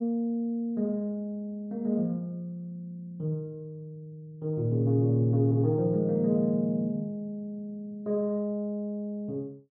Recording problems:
none

